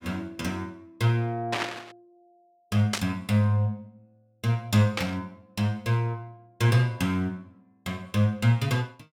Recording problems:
burst of static; at 1.5 s, at 3 s and at 5 s; peak +4 dB vs average level

